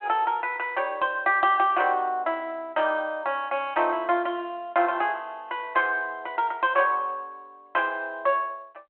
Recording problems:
telephone audio; 280 Hz to 3.3 kHz, G.726

